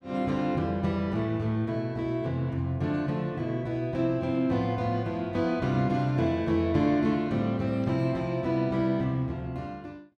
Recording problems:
none

